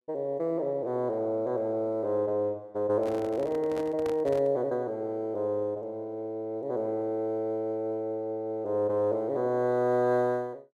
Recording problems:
handling noise; from 3 to 4.5 s; peak -6 dB vs average level

